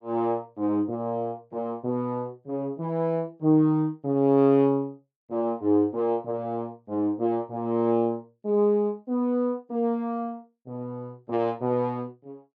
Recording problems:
none

